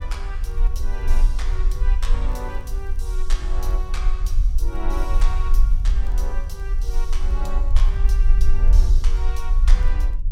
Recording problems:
low-frequency rumble; below 44 Hz, strongest tone 26 Hz, SNR -13 dB
crackle; vinyl, SNR 28 dB

